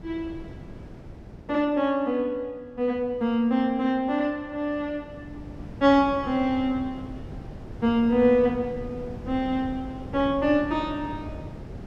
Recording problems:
wind on the microphone; below 300 Hz, SNR 15 dB

